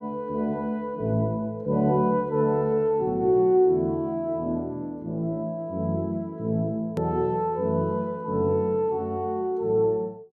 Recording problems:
click at an edit; at 7 s

